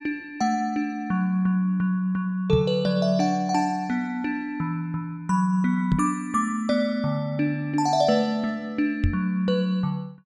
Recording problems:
microphone bump; at 2.5 s, at 6 s and at 9 s; peak +5 dB vs average level

